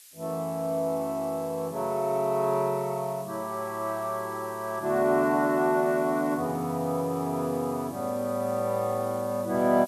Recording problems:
hiss; slope +5 dB per octave, SNR 20 dB

